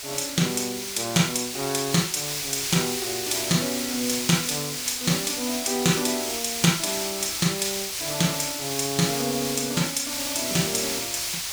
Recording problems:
background hiss; slope +3 dB per octave, SNR 2 dB

